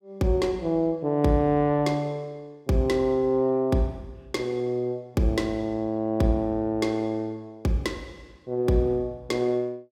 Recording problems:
none

